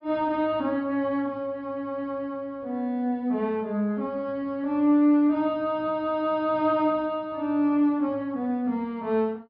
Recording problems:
low-pass filter; nothing above 5.1 kHz

